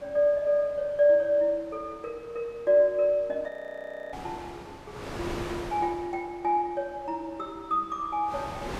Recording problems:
wind on the microphone; below 1.5 kHz, SNR 16 dB
audio freezing; at 3.5 s for 0.5 s

